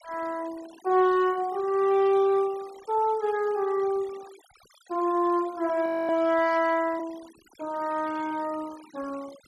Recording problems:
denoising artefacts; signal-to-artefact ratio 23 dB
audio freezing; at 6 s

